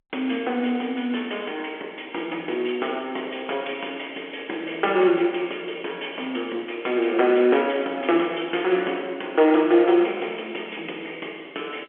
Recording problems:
telephone audio; 280 Hz to 3.3 kHz, G.711

